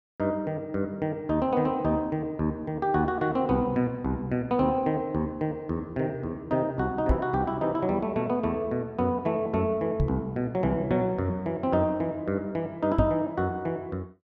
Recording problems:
knock on the microphone; at 7 s, at 10 s and at 13 s; peak +6 dB vs average level

